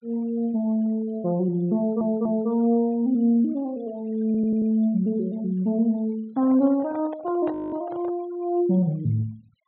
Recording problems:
low-pass filter; nothing above 4 kHz
noise reduction artefacts; signal-to-artefact ratio 27 dB
audio stuttering; at 2 s and at 4.5 s
microphone handling noise; from 6.5 to 8 s; peak -7 dB vs average level
audio freezing; at 7.5 s

